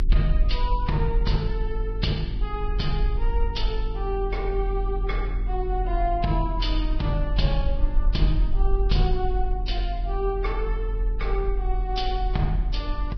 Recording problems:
lossy codec; Vorbis, log-spectral distance 2 dB, nothing above 5.2 kHz
mains hum; 50 Hz, harmonics up to 400 Hz, SNR 10 dB
low-frequency rumble; below 44 Hz, strongest tone 40 Hz, SNR -1 dB

